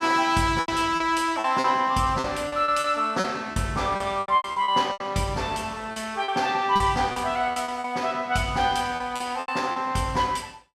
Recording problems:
packet loss; 12% of the sound replaced, filled with repeated pitch periods

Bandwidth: 15 kHz